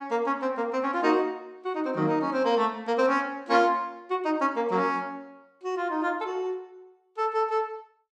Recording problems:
none

